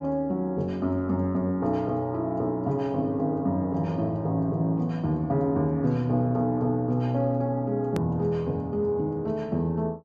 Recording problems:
treble missing; nothing above 8 kHz
hard cut with a click; at 8 s

